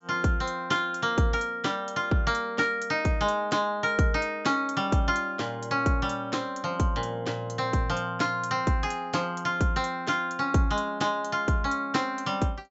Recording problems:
treble missing; nothing above 8 kHz

